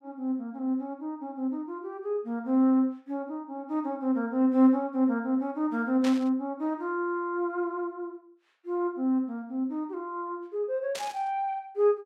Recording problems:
burst of static; at 6 s and at 11 s; peak -5 dB vs average level

